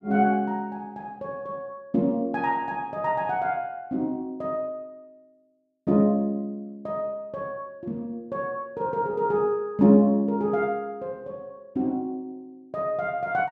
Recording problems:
none

